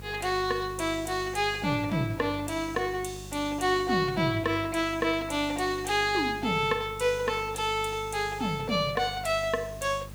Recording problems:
hum; 50 Hz, harmonics up to 600 Hz, SNR 16 dB
background hiss; SNR 23 dB

